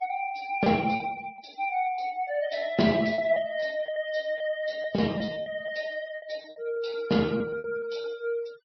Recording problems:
treble cut off; nothing above 5.5 kHz
denoising artefacts; signal-to-artefact ratio 21 dB
packet loss; 9% of the sound replaced, filled with repeated pitch periods

